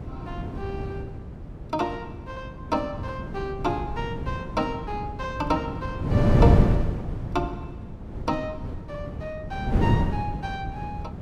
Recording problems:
wind noise; below 220 Hz, SNR -3 dB

